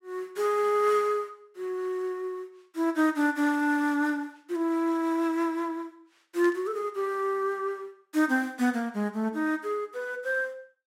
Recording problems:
burst of static; at 6.5 s; peak -13 dB vs average level

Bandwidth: 16 kHz